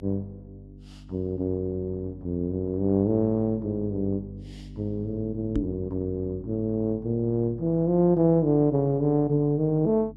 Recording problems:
mains hum; 50 Hz, harmonics up to 300 Hz, SNR 19 dB
microphone bump; at 5.5 s; peak +1 dB vs average level

